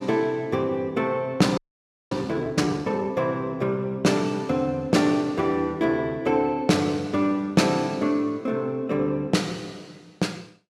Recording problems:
frozen audio; at 1.5 s for 0.5 s

